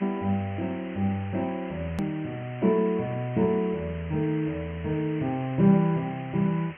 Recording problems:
treble missing; nothing above 3.1 kHz
hiss; SNR 18 dB
edit click; at 2 s

